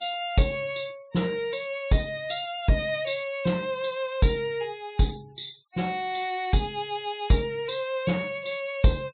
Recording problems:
low-pass filter; nothing above 4 kHz
denoising artefacts; signal-to-artefact ratio 27 dB

